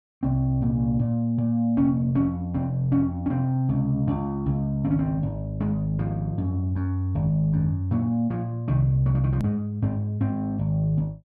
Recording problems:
click at an edit; at 9.5 s

